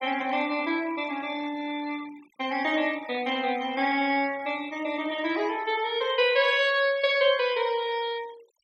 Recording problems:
noise reduction artefacts; signal-to-artefact ratio 21 dB

